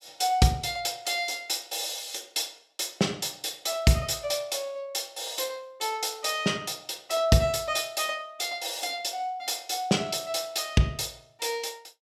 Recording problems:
none

